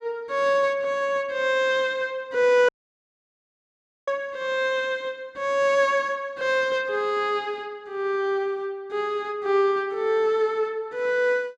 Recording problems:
audio cutting out; at 2.5 s for 1.5 s

